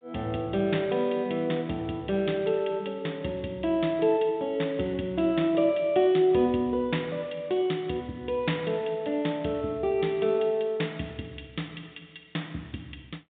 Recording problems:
phone line; 150 Hz to 3.7 kHz, G.726

